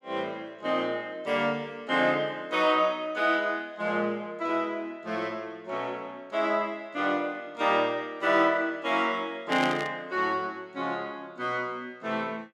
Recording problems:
burst of static; at 9.5 s; peak -2 dB vs average level

